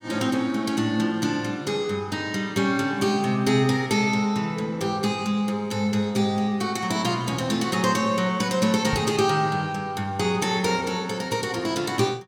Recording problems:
microphone bump; at 9 s; peak -2 dB vs average level

